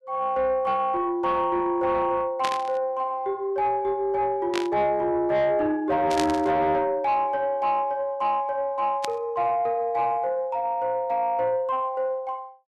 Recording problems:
distorted audio; soft clipping, signal-to-distortion ratio 12 dB
burst of static; 4 times, first at 2.5 s; peak -1 dB vs average level

